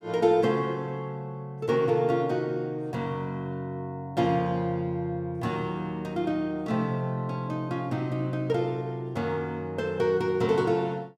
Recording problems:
none

